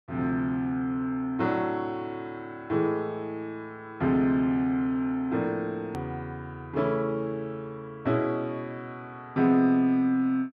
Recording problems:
hard cut with a click; at 6 s

